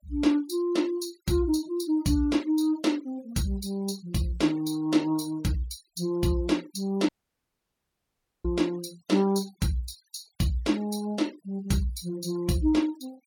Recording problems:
noise reduction artefacts; signal-to-artefact ratio 22 dB
audio cutting out; at 7 s for 1.5 s

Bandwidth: 18 kHz